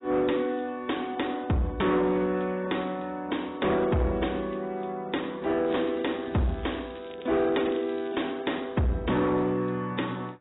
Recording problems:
lossy compression; AAC, log-spectral distance 6 dB, nothing above 3.8 kHz
distorted audio; soft clipping, signal-to-distortion ratio 11 dB
crackling; from 5.5 to 8 s; loose cable, SNR 23 dB

